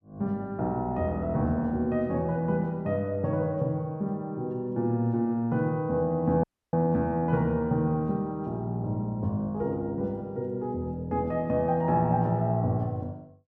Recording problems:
audio cutting out; at 6.5 s

